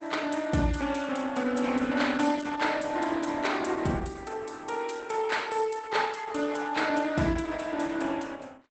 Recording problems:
codec artefacts; Opus, log-spectral distance 5 dB, nothing above 8 kHz

